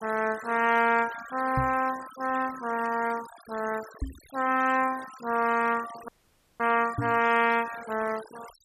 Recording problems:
denoising artefacts; signal-to-artefact ratio 17 dB
microphone bump; at 1.5 s, at 4 s and at 7 s; peak +1 dB vs average level
dropout; at 6 s for 0.5 s

